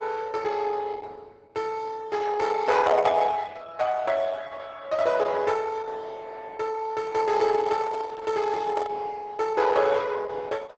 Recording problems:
codec artefacts; Opus, log-spectral distance 4 dB, nothing above 7.8 kHz
microphone handling noise; from 7 to 9 s; peak -5 dB vs average level

